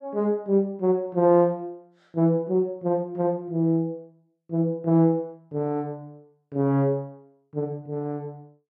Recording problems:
none

